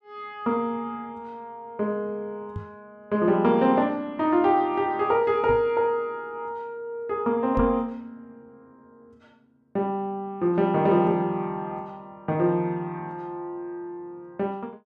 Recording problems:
knock on the microphone; at 2.5 s, at 5.5 s and at 7.5 s; peak -2 dB vs average level

